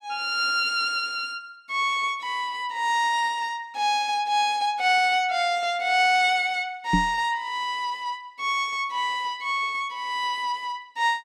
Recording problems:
microphone thump; at 7 s; peak +5 dB vs average level

